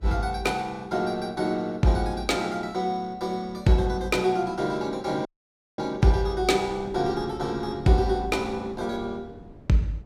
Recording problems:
wind noise; below 340 Hz, SNR 20 dB
audio cutting out; at 5.5 s for 0.5 s

